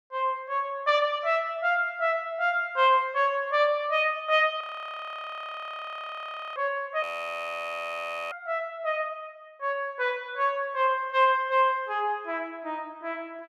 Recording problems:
audio freezing; at 4.5 s for 2 s and at 7 s for 1.5 s

